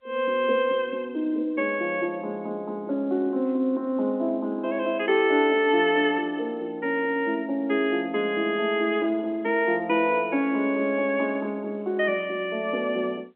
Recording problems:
phone line; 220 Hz to 3.1 kHz, G.711

